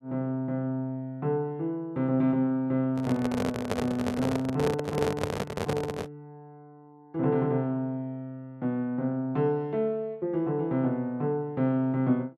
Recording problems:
microphone handling noise; from 3 to 6 s; peak +3 dB vs average level

